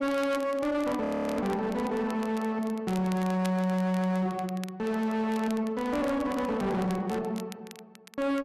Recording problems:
distortion; hard clipping, signal-to-distortion ratio 7 dB
crackling; vinyl, SNR 20 dB
audio freezing; at 1 s

